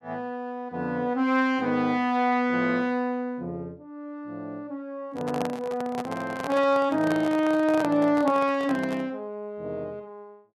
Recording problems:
handling noise; from 5 to 9 s; peak -2 dB vs average level

